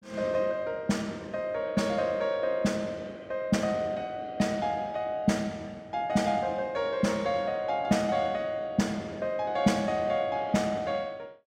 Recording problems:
none

